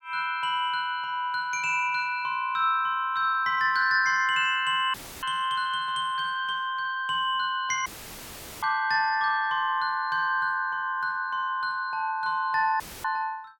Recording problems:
audio cutting out; at 5 s, at 8 s for 1 s and at 13 s; filled with static

